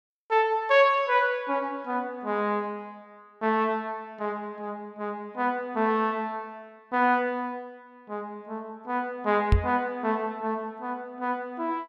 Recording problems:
knock on the microphone; at 9.5 s; peak +9 dB vs average level

